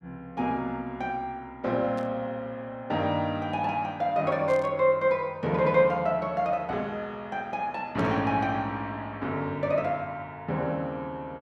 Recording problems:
burst of static; at 2 s, at 4.5 s and at 8 s; peak -16 dB vs average level

